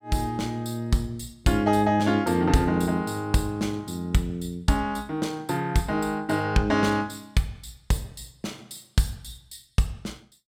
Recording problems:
none

